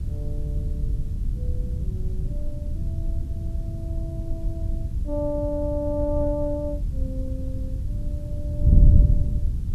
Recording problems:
background hiss; slope -2 dB per octave, SNR 27 dB
wind noise; below 94 Hz, SNR -5 dB

